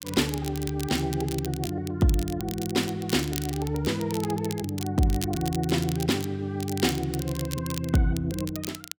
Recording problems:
crackling; vinyl, SNR 11 dB

